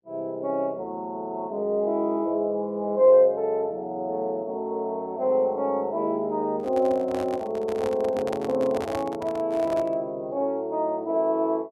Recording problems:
microphone handling noise; from 6.5 to 10 s; peak -3 dB vs average level

